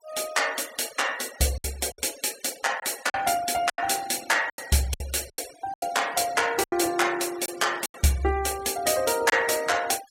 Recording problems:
noise reduction artefacts; signal-to-artefact ratio 17 dB
lost packets; 8% of the sound replaced, filled with silence

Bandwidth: 16 kHz